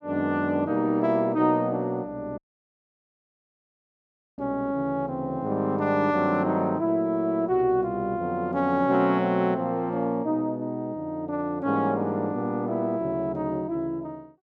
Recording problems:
audio cutting out; at 2.5 s for 2 s

